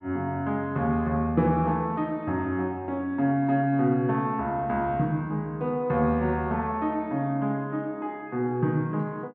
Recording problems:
none

